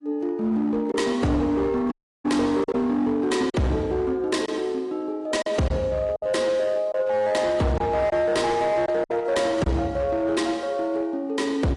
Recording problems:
codec artefacts; AAC, log-spectral distance 2 dB, nothing above 10.4 kHz
distorted audio; hard clipping, signal-to-distortion ratio 10 dB
packet loss; 4% of the sound replaced, filled with silence
audio cutting out; at 2 s

